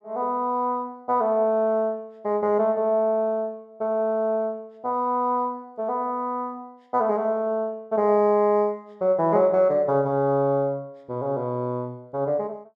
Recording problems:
none

